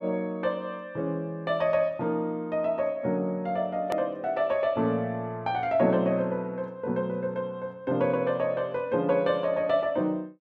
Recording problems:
edit click; at 4 s

